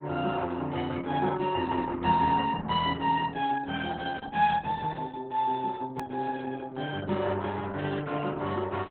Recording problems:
lossy compression; Opus, log-spectral distance 4 dB
click at an edit; at 6 s

